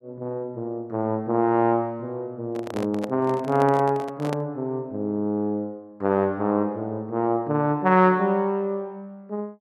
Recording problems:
microphone handling noise; from 2.5 to 4.5 s; peak -3 dB vs average level

